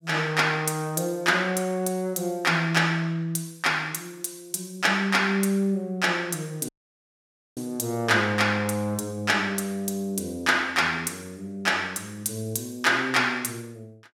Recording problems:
audio cutting out; at 6.5 s for 1 s

